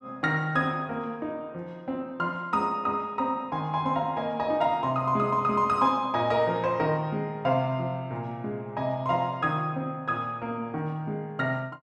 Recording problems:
none

